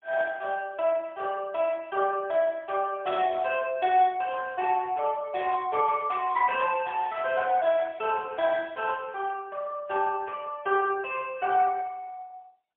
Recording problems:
telephone audio; 260 Hz to 3.4 kHz, AMR-NB, then MP3

